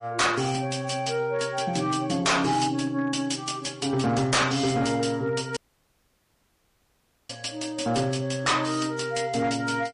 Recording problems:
lossy codec; MP3, log-spectral distance 4 dB, nothing above 10.4 kHz
distorted audio; hard clipping, signal-to-distortion ratio 8 dB
audio cutting out; at 5.5 s for 1.5 s

